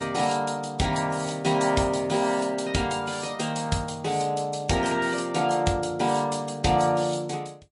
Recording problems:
lossy compression; MP3, log-spectral distance 4 dB, nothing above 10.4 kHz

